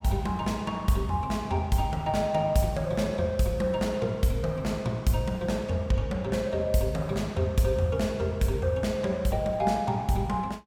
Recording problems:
none

